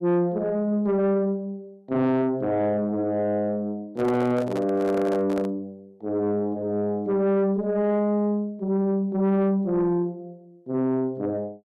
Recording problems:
distortion; soft clipping, signal-to-distortion ratio 11 dB
handling noise; from 4 to 5.5 s; peak -4 dB vs average level

